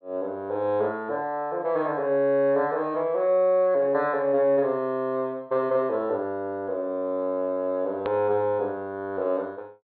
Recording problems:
treble cut off; nothing above 4.3 kHz
click at an edit; at 8 s

